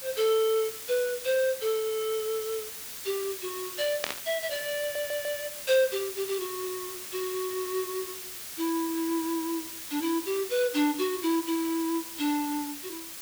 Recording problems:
background hiss; slope +1 dB per octave, SNR 7 dB
burst of static; at 4 s; peak +3 dB vs average level
stutter; at 5 s

